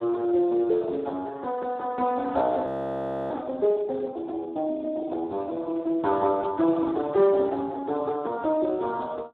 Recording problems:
telephone audio; 280 Hz to 2 kHz, Speex
audio freezing; at 2.5 s for 0.5 s

